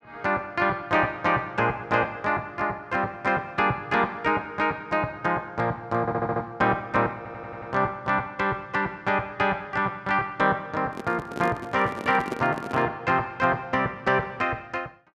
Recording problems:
stutter; at 6 s and at 7 s
microphone handling noise; from 11 to 13 s; peak -1 dB vs average level

